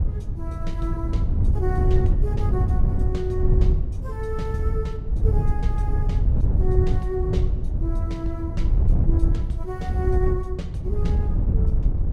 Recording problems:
wind on the microphone; below 92 Hz, SNR -8 dB

